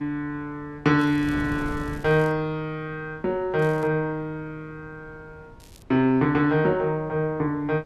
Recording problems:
wind noise; below 300 Hz, SNR 19 dB
crackle; from 1 to 2.5 s, at 3.5 s and at 5.5 s; loose cable, SNR 28 dB

